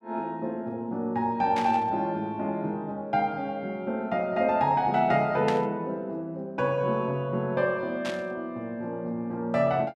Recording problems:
burst of static; at 1.5 s, at 5.5 s and at 8 s; peak -2 dB vs average level

